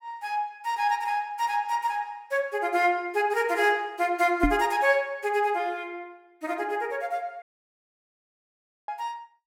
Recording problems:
knock on the microphone; at 4.5 s; peak +6 dB vs average level
audio cutting out; at 7.5 s for 1.5 s

